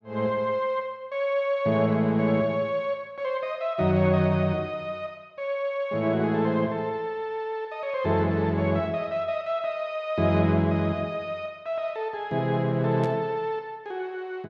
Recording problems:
static burst; at 13 s; peak -14 dB vs average level

